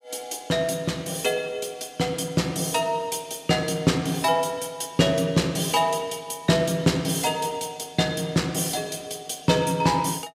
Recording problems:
none

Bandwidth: 15.5 kHz